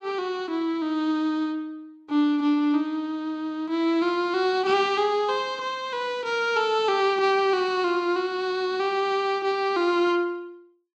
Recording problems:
none

